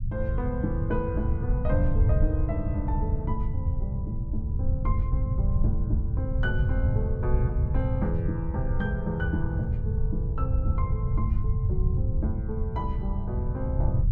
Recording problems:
low-frequency rumble; below 110 Hz, SNR -6 dB

